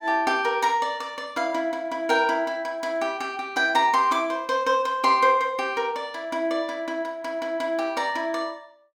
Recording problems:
none

